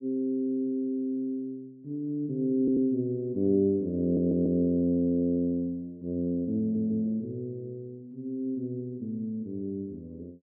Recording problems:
stutter; at 2.5 s, at 4 s and at 6.5 s

